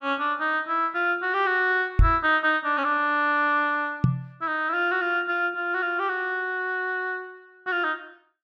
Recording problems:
microphone bump; at 2 s and at 4 s; peak +8 dB vs average level

